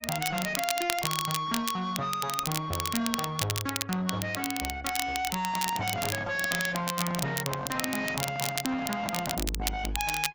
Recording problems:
lossy codec; AAC, log-spectral distance 2 dB
distortion; soft clipping, signal-to-distortion ratio 7 dB
crackling; vinyl, SNR 3 dB
handling noise; from 5.5 to 9.5 s; peak +1 dB vs average level

